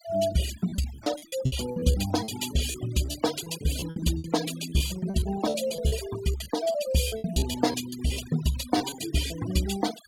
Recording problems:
denoising artefacts; signal-to-artefact ratio 11 dB
packet loss; 13% of the sound replaced, filled with repeated pitch periods

